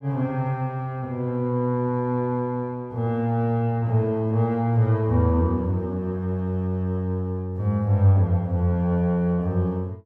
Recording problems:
none

